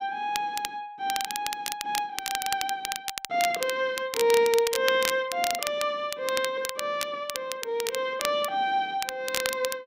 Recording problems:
crackle; vinyl, SNR 5 dB

